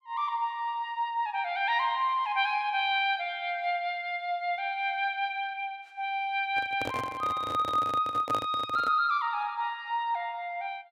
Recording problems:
microphone handling noise; from 6.5 to 9 s; peak -2 dB vs average level

